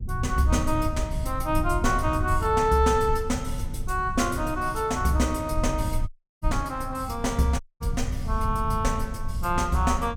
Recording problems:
low-frequency rumble; below 100 Hz, SNR 6 dB
audio cutting out; at 6 s and at 7.5 s

